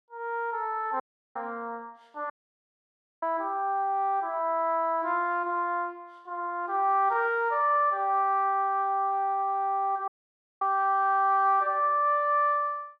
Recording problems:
audio cutting out; at 1 s, at 2.5 s for 1 s and at 10 s for 0.5 s

